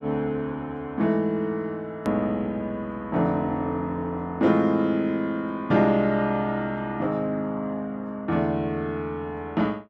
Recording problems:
hard cut with a click; at 2 s

